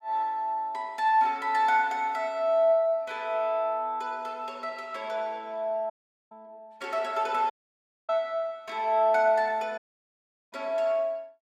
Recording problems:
audio cutting out; at 6 s, at 7.5 s for 0.5 s and at 10 s for 0.5 s

